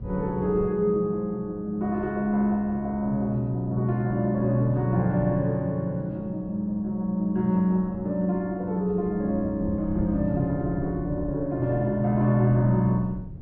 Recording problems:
low-pass filter; nothing above 6 kHz
wind noise; below 150 Hz, SNR 15 dB

